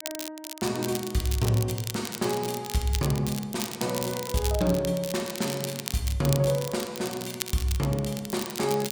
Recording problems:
crackling; vinyl, SNR 8 dB

